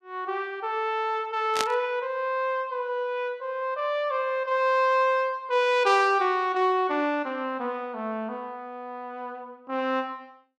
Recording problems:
static burst; at 1.5 s; peak +4 dB vs average level

